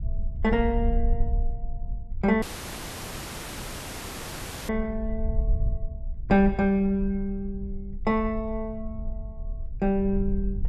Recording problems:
low-frequency rumble; below 56 Hz, SNR 6 dB
audio cutting out; at 2.5 s for 2.5 s

